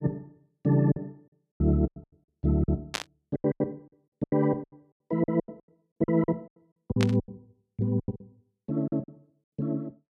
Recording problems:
packet loss; 20% of the sound replaced, filled with silence
static burst; at 3 s and at 7 s; peak +3 dB vs average level

